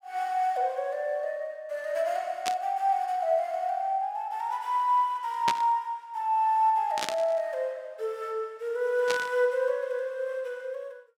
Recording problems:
static burst; 4 times, first at 2.5 s; peak +3 dB vs average level

